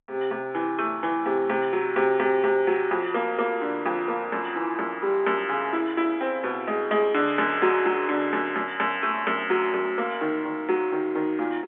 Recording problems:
telephone audio; 280 Hz to 3.5 kHz, G.711

